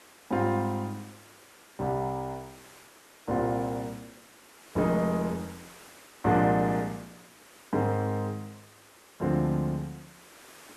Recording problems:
background hiss; slope -3 dB per octave, SNR 22 dB

